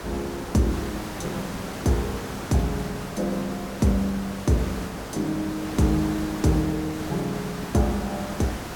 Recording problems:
electrical hum; 50 Hz, harmonics up to 300 Hz, SNR 21 dB
hiss; slope -5 dB per octave, SNR 8 dB

